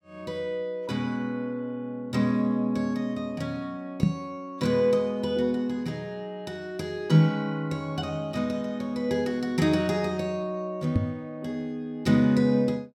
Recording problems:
microphone bump; at 4 s and at 11 s; peak +9 dB vs average level

